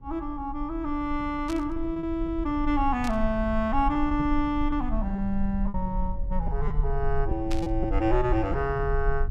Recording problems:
low-frequency rumble; below 52 Hz, SNR 6 dB
packet loss; 6% of the sound replaced, filled with repeated pitch periods
burst of static; at 1.5 s, at 3 s and at 7.5 s; peak -5 dB vs average level

